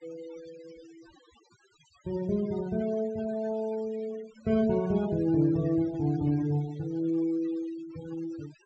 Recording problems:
low-pass filter; nothing above 8 kHz
denoising artefacts; signal-to-artefact ratio 20 dB

